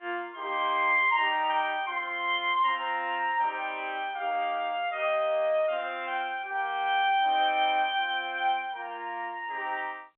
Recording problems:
telephone audio; 280 Hz to 3.7 kHz, G.711

